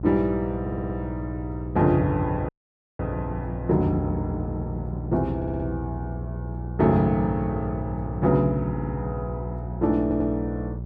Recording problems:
hum; 60 Hz, harmonics up to 600 Hz, SNR 7 dB
audio stuttering; 4 times, first at 0.5 s
audio cutting out; at 2.5 s for 0.5 s

